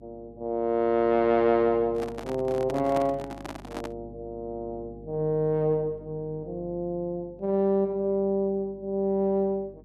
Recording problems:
electrical hum; 50 Hz, harmonics up to 400 Hz, SNR 21 dB
microphone handling noise; from 2 to 4 s; peak -4 dB vs average level

